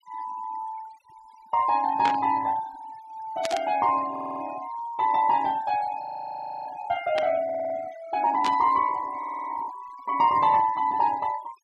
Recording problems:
denoising artefacts; signal-to-artefact ratio 20 dB
static burst; 4 times, first at 2 s; peak -2 dB vs average level
stutter; at 4 s, at 7.5 s and at 9 s
audio freezing; at 6 s for 0.5 s

